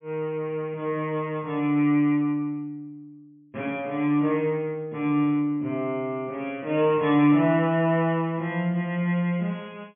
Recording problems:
treble cut off; nothing above 3.3 kHz

